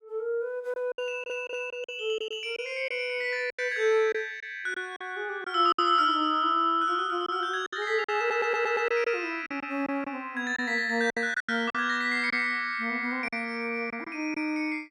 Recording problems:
lost packets; 8% of the sound replaced, filled with silence
stutter; at 1 s and at 8 s

